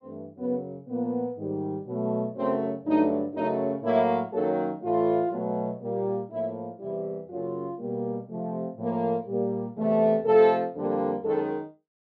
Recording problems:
none

